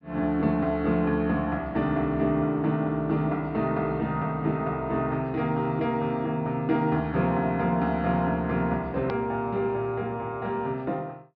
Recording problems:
treble cut off; nothing above 5.5 kHz
click at an edit; at 9 s

